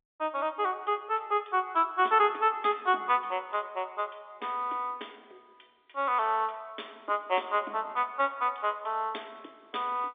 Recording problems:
telephone audio; 260 Hz to 3.6 kHz, G.711

